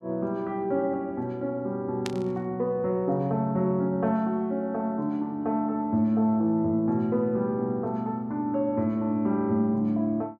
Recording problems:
burst of static; at 2 s; peak -3 dB vs average level

